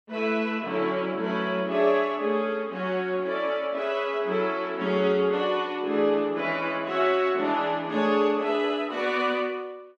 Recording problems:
none

